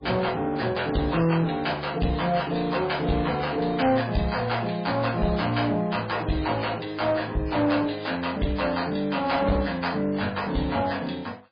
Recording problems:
lossy compression; MP3, log-spectral distance 5 dB, nothing above 4.5 kHz
distortion; hard clipping, uneven, signal-to-distortion ratio 10 dB

